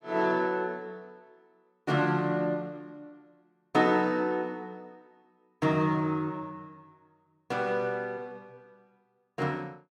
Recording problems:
none

